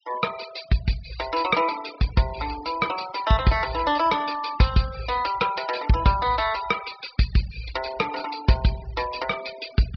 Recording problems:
treble cut off; nothing above 5.5 kHz
noise reduction artefacts; signal-to-artefact ratio 16 dB

